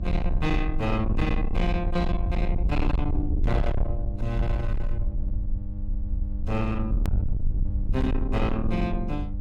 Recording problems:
distortion; soft clipping, signal-to-distortion ratio 7 dB
electrical hum; 50 Hz, harmonics up to 800 Hz, SNR 11 dB
rumble; below 66 Hz, SNR 1 dB
edit click; at 7 s

